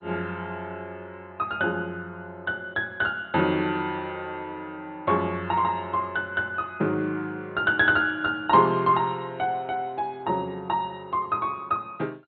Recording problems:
lossy compression; MP2, log-spectral distance 2 dB, nothing above 3.8 kHz

